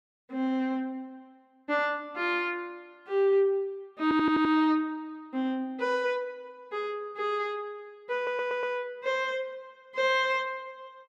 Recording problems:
audio stuttering; at 4 s and at 8 s

